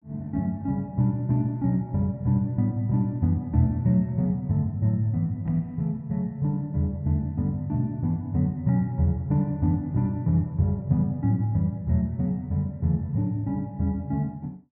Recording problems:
none

